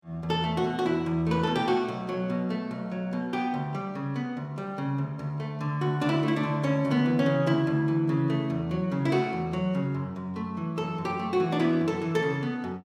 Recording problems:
none

